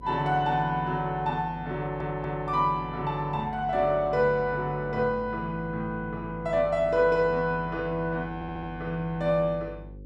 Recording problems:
hum; 50 Hz, harmonics up to 550 Hz, SNR 17 dB
stutter; at 2 s and at 8.5 s

